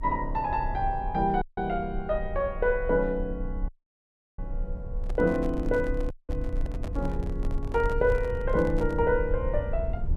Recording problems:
rumble; below 60 Hz, strongest tone 30 Hz, SNR 7 dB
audio cutting out; at 1.5 s, at 3.5 s for 0.5 s and at 6 s
microphone handling noise; from 5 to 9 s; peak -9 dB vs average level

